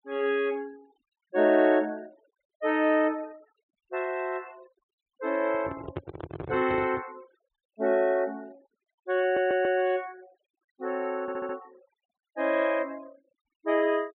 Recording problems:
treble missing; nothing above 4 kHz
noise reduction artefacts; signal-to-artefact ratio 27 dB
microphone handling noise; from 5.5 to 7 s; peak -3 dB vs average level
stutter; at 9 s and at 11 s

